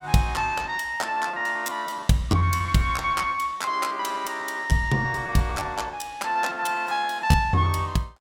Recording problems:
packet loss; 16% of the sound replaced, filled with repeated pitch periods

